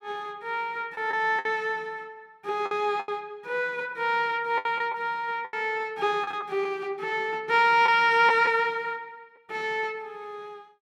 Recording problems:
lost packets; 5% of the sound replaced, filled with the last packet

